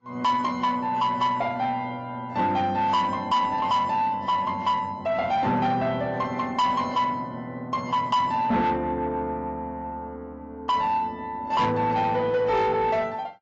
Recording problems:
lossy codec; AAC, log-spectral distance 2 dB, nothing above 7.3 kHz
distorted audio; soft clipping, signal-to-distortion ratio 10 dB

